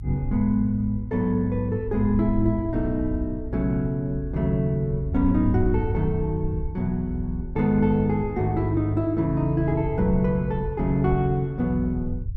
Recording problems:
rumble; below 84 Hz, SNR 9 dB

